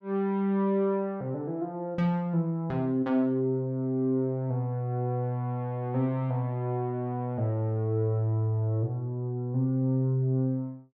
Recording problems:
none

